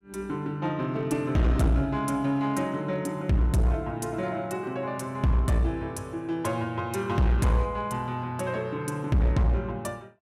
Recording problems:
distortion; hard clipping, uneven, signal-to-distortion ratio 9 dB

